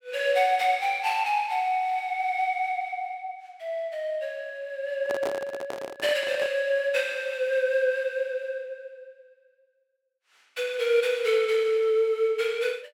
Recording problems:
handling noise; from 5 to 6.5 s; peak -1 dB vs average level

